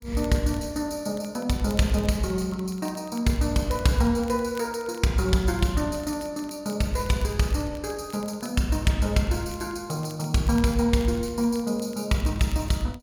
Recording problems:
crackle; vinyl, SNR 25 dB

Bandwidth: 17 kHz